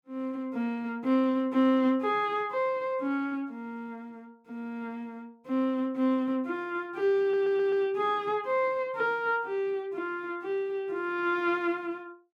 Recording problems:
stutter; at 7 s

